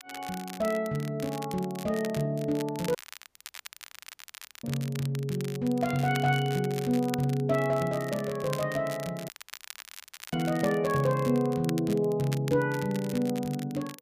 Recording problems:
crackle; vinyl, SNR 15 dB
audio cutting out; at 3 s for 1.5 s and at 9.5 s for 1 s

